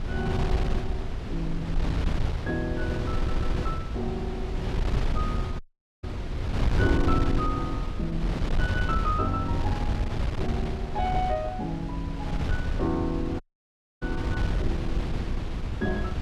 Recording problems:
wind noise; below 120 Hz, SNR -2 dB
audio stuttering; at 3 s
dropout; at 5.5 s and at 13 s for 0.5 s

